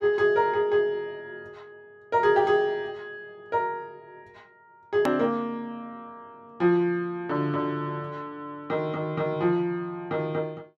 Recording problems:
hard cut with a click; at 5 s

